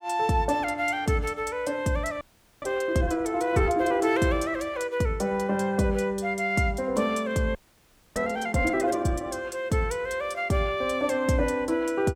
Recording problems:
audio freezing; at 2 s and at 7.5 s for 0.5 s

